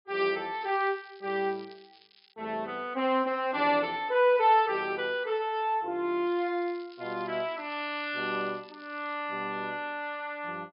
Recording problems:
treble missing; nothing above 5.5 kHz
crackle; from 0.5 to 2.5 s and from 6.5 to 9 s; loose cable, SNR 27 dB

